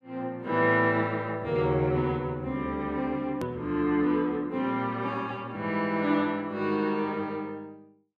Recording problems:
edit click; at 3.5 s

